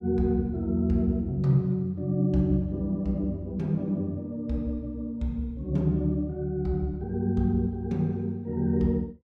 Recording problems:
none

